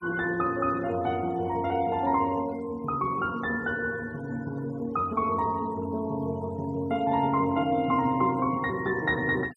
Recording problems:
denoising artefacts; signal-to-artefact ratio 23 dB

